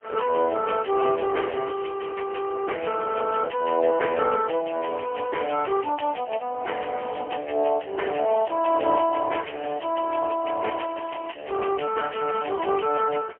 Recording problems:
telephone audio; 300 Hz to 3 kHz, AMR-NB, then MP3
crackling; from 0.5 to 2 s and from 11 to 13 s; loose cable, SNR 27 dB

